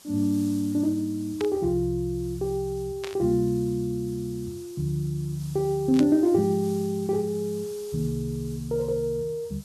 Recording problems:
hiss; SNR 21 dB
static burst; at 1.5 s, at 3 s and at 6 s; peak -4 dB vs average level

